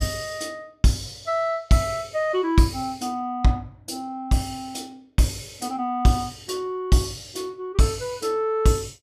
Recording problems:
none

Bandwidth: 14.5 kHz